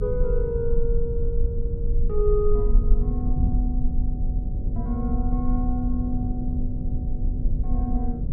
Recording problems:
electrical hum; 50 Hz, harmonics up to 600 Hz, SNR 14 dB
low-frequency rumble; below 42 Hz, strongest tone 20 Hz, SNR -1 dB
wind on the microphone; below 120 Hz, SNR 0 dB

